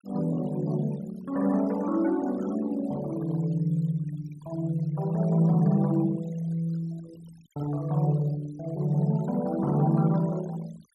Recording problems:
noise reduction artefacts; signal-to-artefact ratio 23 dB

